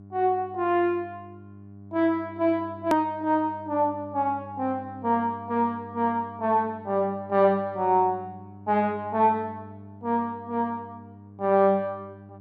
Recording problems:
hum; 50 Hz, harmonics up to 700 Hz, SNR 19 dB
edit click; at 3 s

